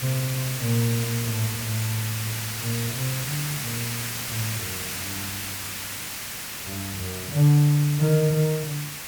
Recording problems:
background hiss; slope 0 dB per octave, SNR 5 dB

